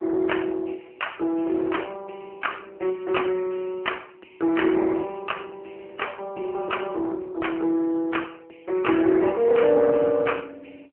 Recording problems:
telephone audio; 280 Hz to 3 kHz, AMR-NB

